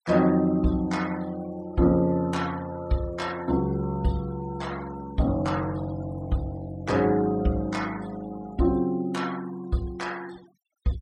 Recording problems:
noise reduction artefacts; signal-to-artefact ratio 22 dB

